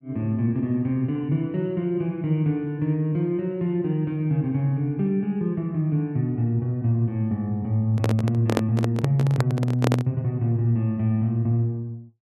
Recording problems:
handling noise; from 8 to 10 s; peak +4 dB vs average level

